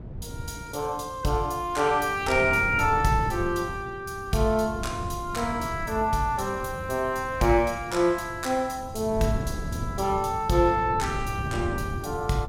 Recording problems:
wind noise; below 200 Hz, SNR 10 dB

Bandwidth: 16 kHz